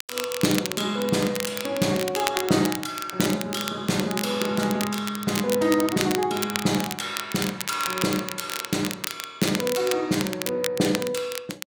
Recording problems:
crackle; vinyl, SNR 6 dB

